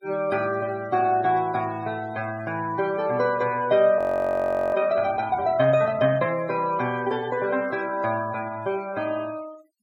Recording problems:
noise reduction artefacts; signal-to-artefact ratio 22 dB
audio freezing; at 4 s for 1 s

